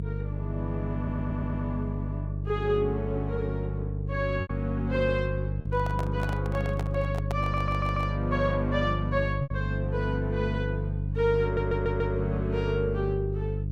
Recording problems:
hum; 50 Hz, harmonics up to 350 Hz, SNR 0 dB
lost packets; 1.7% of the sound replaced, filled with repeated pitch periods
audio stuttering; at 1 s, at 7.5 s and at 11 s
microphone handling noise; from 5.5 to 8 s; peak -1 dB vs average level

